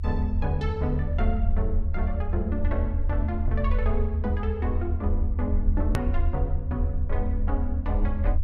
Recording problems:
rumble; below 78 Hz, SNR -4 dB
click at an edit; at 6 s

